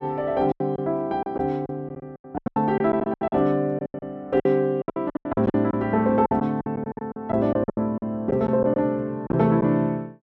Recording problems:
lost packets; 17% of the sound replaced, filled with silence

